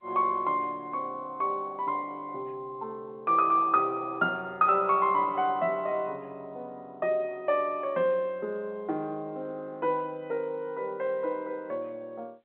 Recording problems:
telephone audio; 280 Hz to 3.6 kHz, G.711

